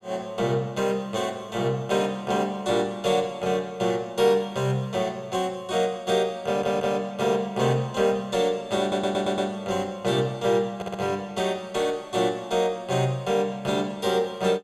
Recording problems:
audio stuttering; at 6.5 s, at 9 s and at 11 s

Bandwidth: 15 kHz